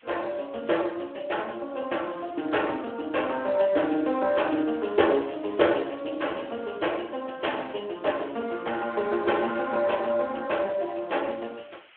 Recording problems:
telephone audio; 280 Hz to 3.3 kHz, Speex
background hiss; SNR 27 dB

